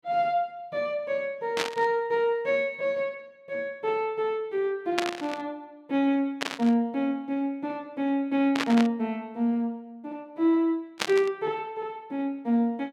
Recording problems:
burst of static; 5 times, first at 1.5 s; peak +5 dB vs average level

